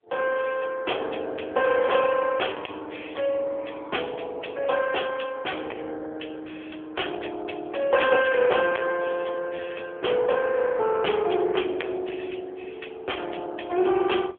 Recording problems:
telephone audio; 320 Hz to 3.3 kHz, AMR-NB
distortion; hard clipping, uneven, signal-to-distortion ratio 9 dB

